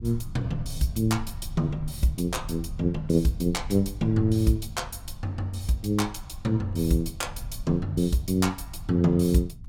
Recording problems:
low-frequency rumble; below 94 Hz, SNR 14 dB

